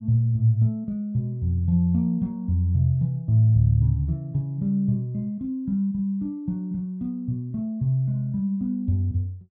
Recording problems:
none

